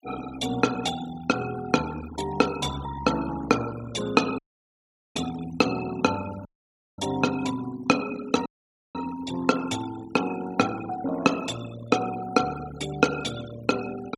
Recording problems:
denoising artefacts; signal-to-artefact ratio 14 dB
dropout; at 4.5 s for 1 s, at 6.5 s for 0.5 s and at 8.5 s

